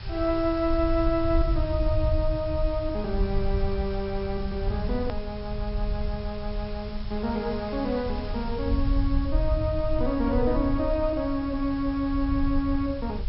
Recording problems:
low-pass filter; nothing above 5.4 kHz
hiss; SNR 18 dB
rumble; below 78 Hz, SNR 3 dB
hard cut with a click; at 5 s

